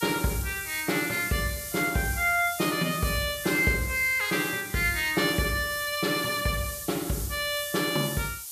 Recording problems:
background hiss; SNR 9 dB

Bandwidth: 14.5 kHz